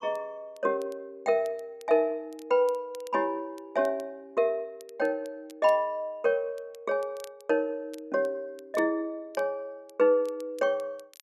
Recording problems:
crackling; vinyl, SNR 27 dB

